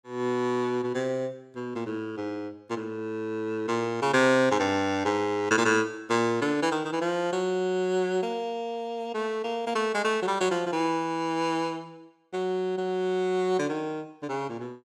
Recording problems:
none

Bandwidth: 17 kHz